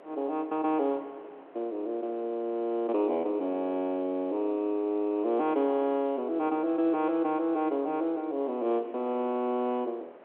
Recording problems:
phone line; 280 Hz to 3.6 kHz, G.711
wind noise; below 880 Hz, SNR 23 dB

